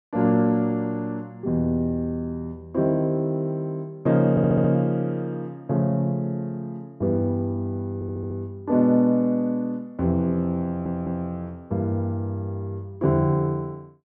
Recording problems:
audio stuttering; at 4.5 s, at 8 s and at 11 s

